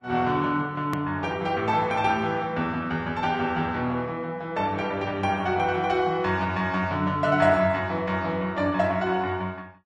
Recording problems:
codec artefacts; Vorbis, log-spectral distance 2 dB, nothing above 15.1 kHz
hard cut with a click; at 1 s

